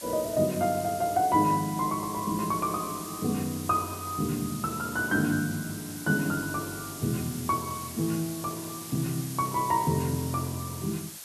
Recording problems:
background hiss; slope +1 dB per octave, SNR 10 dB

